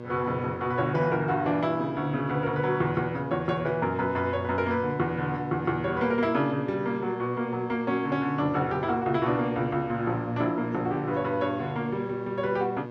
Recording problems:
electrical hum; 60 Hz, harmonics up to 1.7 kHz, SNR 11 dB

